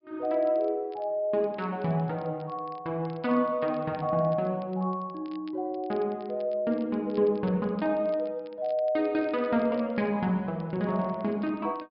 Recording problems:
treble missing; nothing above 5.5 kHz
crackle; vinyl, SNR 30 dB

